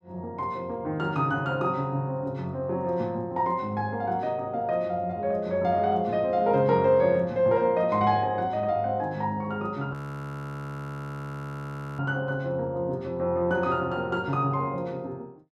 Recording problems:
frozen audio; at 10 s for 2 s

